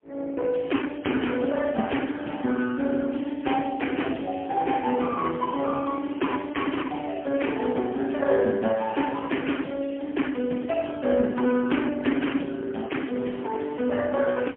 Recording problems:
phone line; 170 Hz to 3.3 kHz, AMR-NB, then MP3

